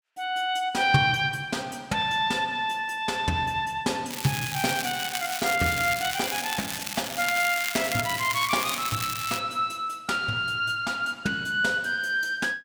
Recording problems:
crackling; from 4 to 9.5 s; loose cable, SNR 5 dB

